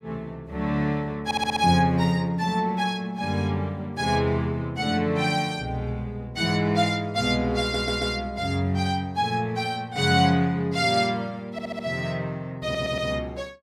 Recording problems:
stutter; 4 times, first at 1.5 s

